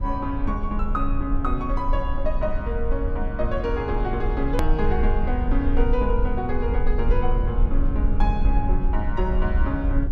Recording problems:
low-frequency rumble; below 54 Hz, strongest tone 22 Hz, SNR -1 dB
edit click; at 4.5 s

